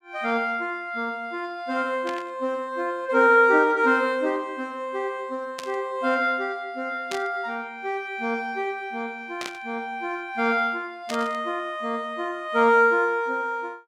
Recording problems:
static burst; 5 times, first at 2 s; peak -4 dB vs average level

